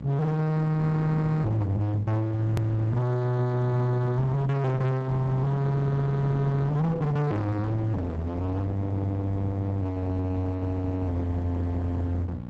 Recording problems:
lossy codec; Opus, log-spectral distance 2 dB, nothing above 13.1 kHz
distorted audio; hard clipping, uneven, signal-to-distortion ratio 6 dB
electrical hum; 60 Hz, harmonics up to 1.1 kHz, SNR 17 dB
click at an edit; at 2.5 s

